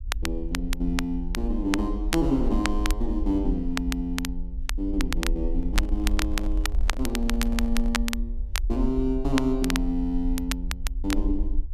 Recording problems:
low-frequency rumble; below 50 Hz, SNR 3 dB
crackle; vinyl, SNR 6 dB
handling noise; from 5.5 to 8 s; peak -9 dB vs average level

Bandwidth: 14 kHz